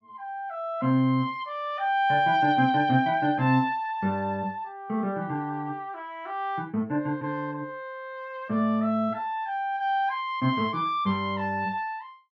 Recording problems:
none

